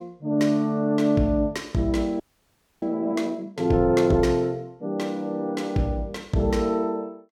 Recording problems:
audio freezing; at 2 s for 0.5 s

